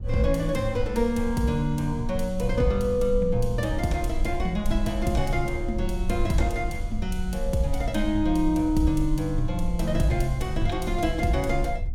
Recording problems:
rumble; below 54 Hz, SNR 7 dB

